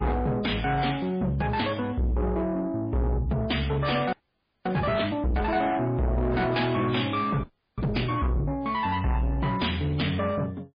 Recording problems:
lossy codec; MP3, log-spectral distance 3 dB
distorted audio; soft clipping, signal-to-distortion ratio 7 dB
frozen audio; at 4 s for 0.5 s and at 7.5 s

